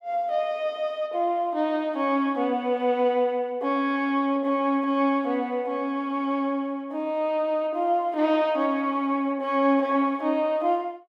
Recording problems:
none

